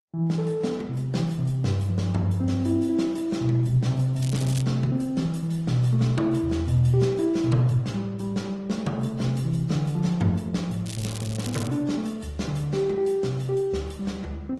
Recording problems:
codec artefacts; AAC, then Opus, log-spectral distance 3 dB, nothing above 12 kHz
crackle; at 4 s and at 11 s; loose cable, SNR 15 dB

